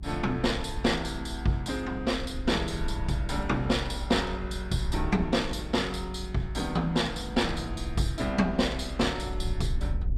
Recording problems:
rumble; below 64 Hz, SNR 8 dB

